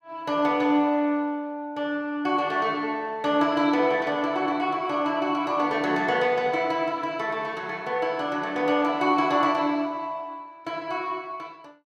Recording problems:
none

